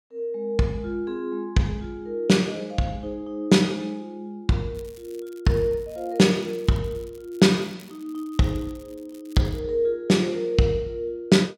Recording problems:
crackling; from 4.5 to 9.5 s; loose cable, SNR 28 dB

